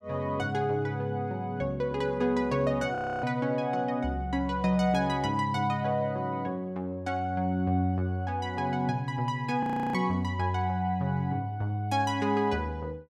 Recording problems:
frozen audio; at 3 s and at 9.5 s

